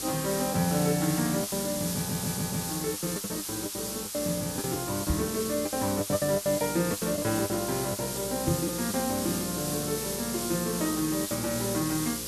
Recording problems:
hum; 60 Hz, harmonics up to 540 Hz, SNR 15 dB
hiss; SNR 3 dB
lost packets; 10% of the sound replaced, filled with the last packet
stutter; at 2 s
microphone bump; at 5 s and at 8.5 s; peak +4 dB vs average level

